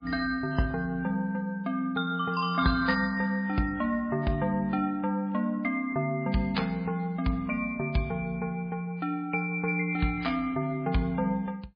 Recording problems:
lossy codec; MP3, log-spectral distance 2 dB, nothing above 4.1 kHz

